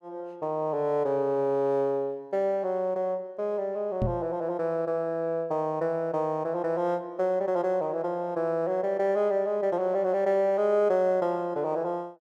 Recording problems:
microphone bump; at 4 s; peak +1 dB vs average level

